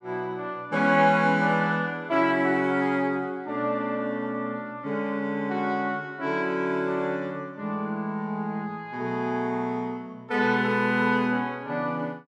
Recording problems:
none

